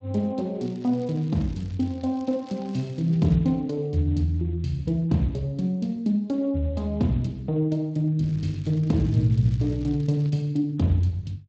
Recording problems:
lossy compression; Speex, log-spectral distance 2 dB, nothing above 7.8 kHz
crackle; from 0.5 to 3.5 s and from 8 to 10 s; loose cable, SNR 28 dB

